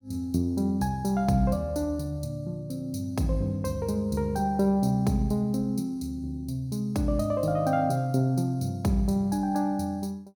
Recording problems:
none

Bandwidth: 18 kHz